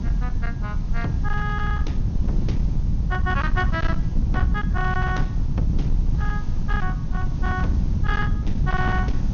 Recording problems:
low-pass filter; nothing above 6.7 kHz
distortion; hard clipping, uneven, signal-to-distortion ratio 10 dB
hiss; SNR 18 dB
rumble; below 120 Hz, SNR -4 dB

